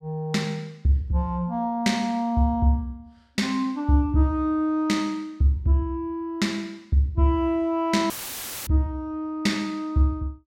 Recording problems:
audio cutting out; at 8 s for 0.5 s; filled with static

